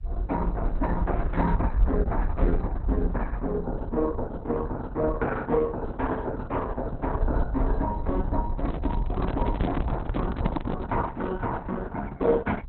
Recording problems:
codec artefacts; Opus, log-spectral distance 2 dB
rumble; below 60 Hz, SNR 2 dB
handling noise; from 8.5 to 11 s; peak +11 dB vs average level

